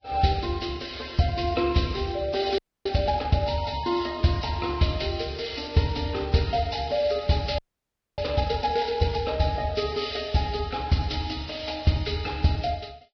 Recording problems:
lossy codec; Vorbis, log-spectral distance 7 dB, nothing above 5.3 kHz
frozen audio; at 2.5 s and at 7.5 s for 0.5 s

